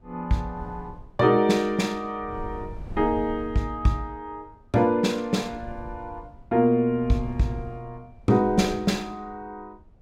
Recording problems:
wind on the microphone; below 120 Hz, SNR 18 dB

